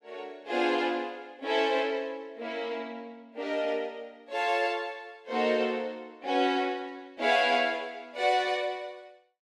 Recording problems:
none

